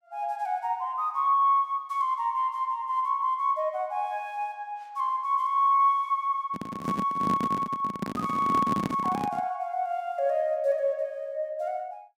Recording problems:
handling noise; from 6.5 to 9.5 s; peak +1 dB vs average level

